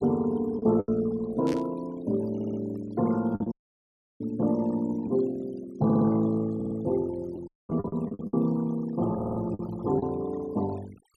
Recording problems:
noise reduction artefacts; signal-to-artefact ratio 19 dB
lost packets; 7% of the sound replaced, filled with the last packet
static burst; at 1.5 s; peak -10 dB vs average level
audio stuttering; 4 times, first at 2.5 s
audio cutting out; at 3.5 s for 0.5 s and at 7.5 s

